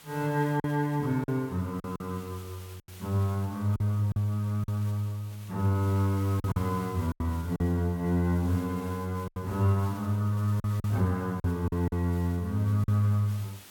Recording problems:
background hiss; slope -1 dB per octave, SNR 22 dB
lost packets; 6% of the sound replaced, filled with silence

